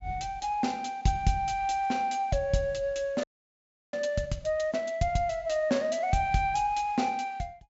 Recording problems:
treble cut off; nothing above 8 kHz
audio freezing; at 3 s for 0.5 s

